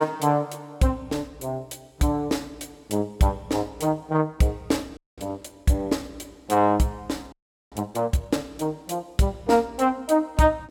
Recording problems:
frozen audio; at 5 s and at 7.5 s

